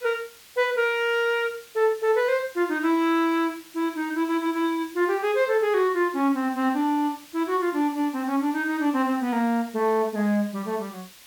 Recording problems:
hiss; slope +2 dB per octave, SNR 22 dB

